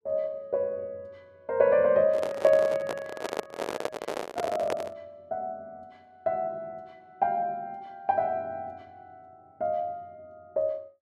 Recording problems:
handling noise; from 2 to 5 s; peak +2 dB vs average level

